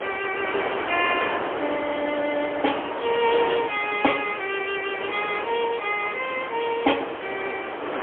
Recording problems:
telephone audio; 260 Hz to 3.3 kHz, AMR-NB, then MP3
background hiss; SNR 27 dB
wind noise; below 1.4 kHz, SNR 5 dB

